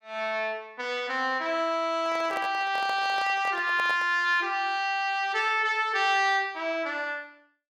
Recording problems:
microphone handling noise; from 2 to 4 s; peak -6 dB vs average level

